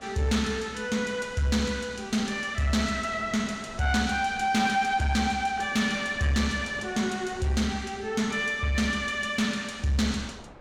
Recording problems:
distorted audio; soft clipping, signal-to-distortion ratio 12 dB
wind on the microphone; below 1 kHz, SNR 21 dB

